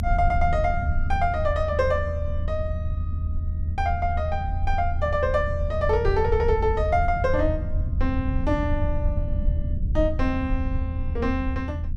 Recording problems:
low-frequency rumble; below 82 Hz, SNR 2 dB

